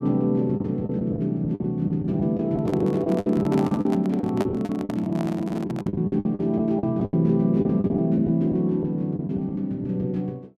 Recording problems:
lost packets; 13% of the sound replaced, filled with the last packet
handling noise; from 2.5 to 6 s; peak -3 dB vs average level

